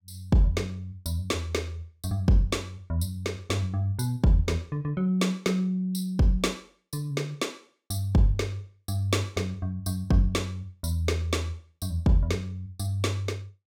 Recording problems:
none

